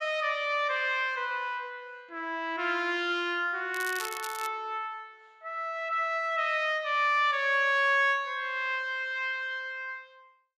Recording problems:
crackle; at 3.5 s; loose cable, SNR 12 dB

